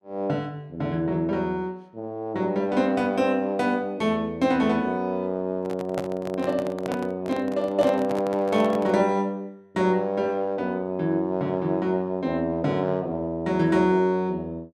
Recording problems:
microphone handling noise; from 5.5 to 9 s; peak -2 dB vs average level

